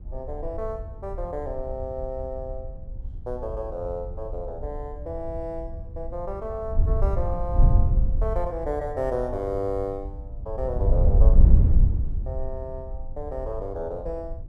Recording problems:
wind noise; below 70 Hz, SNR -7 dB

